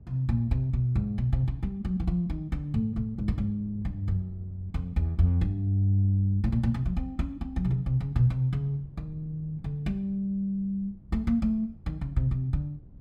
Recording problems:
wind noise; below 150 Hz, SNR 21 dB

